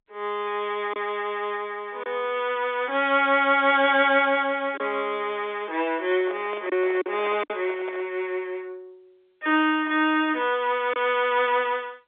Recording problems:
telephone audio; 260 Hz to 3.6 kHz, G.711
lost packets; 1.8% of the sound replaced, filled with silence
handling noise; from 6 to 8 s; peak -11 dB vs average level

